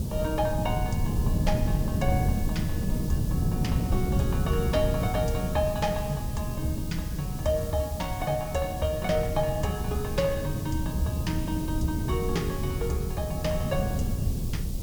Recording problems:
hiss; SNR 12 dB
wind on the microphone; below 170 Hz, SNR 0 dB

